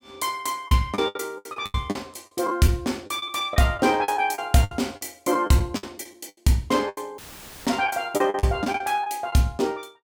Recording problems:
packet loss; 14% of the sound replaced, filled with the last packet
audio cutting out; at 7 s; filled with static

